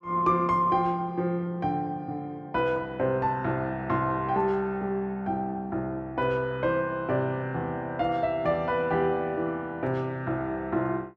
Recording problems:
none

